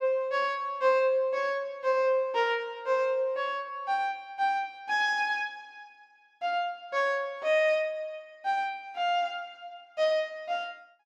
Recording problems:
none

